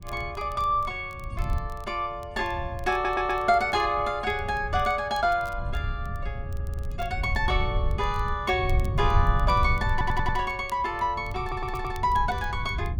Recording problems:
wind noise; below 94 Hz, SNR 5 dB
crackle; vinyl, SNR 28 dB
stutter; 4 times, first at 3 s

